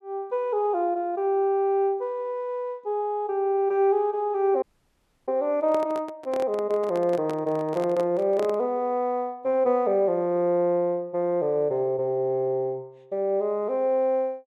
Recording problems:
audio cutting out; at 4.5 s for 0.5 s
handling noise; from 5.5 to 8.5 s; peak -5 dB vs average level

